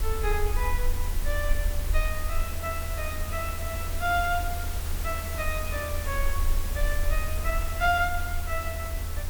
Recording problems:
hiss; slope -3 dB per octave, SNR 5 dB
rumble; below 76 Hz, strongest tone 22 Hz, SNR 1 dB

